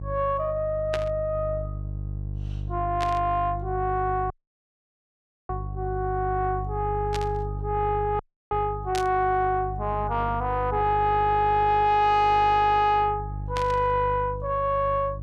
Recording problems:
distorted audio; soft clipping, signal-to-distortion ratio 10 dB
mains hum; 50 Hz, harmonics up to 350 Hz, SNR 10 dB
burst of static; 5 times, first at 1 s; peak -3 dB vs average level
audio cutting out; at 4.5 s for 1 s and at 8 s

